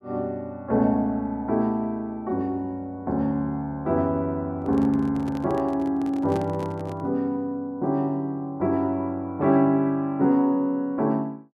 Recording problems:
handling noise; from 4.5 to 7 s; peak -5 dB vs average level

